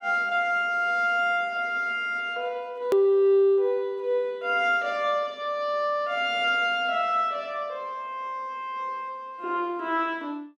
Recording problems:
hard cut with a click; at 3 s

